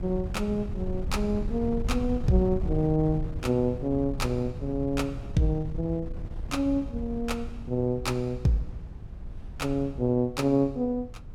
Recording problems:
wind on the microphone; below 100 Hz, SNR 9 dB

